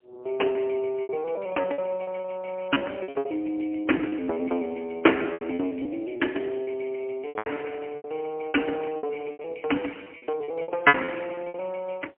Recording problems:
telephone audio; 240 Hz to 3 kHz, AMR-NB, then MP3
lost packets; 16% of the sound replaced, filled with repeated pitch periods

